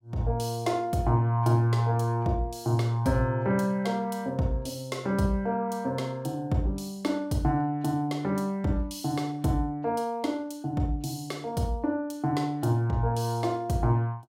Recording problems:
none

